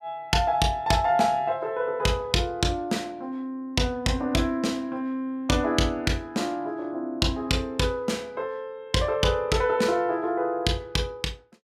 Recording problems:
none

